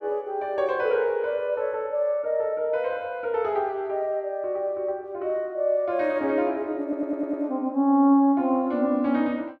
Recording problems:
stutter; at 7 s

